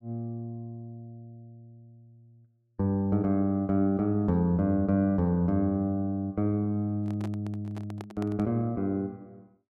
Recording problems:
handling noise; from 7 to 8.5 s; peak -9 dB vs average level

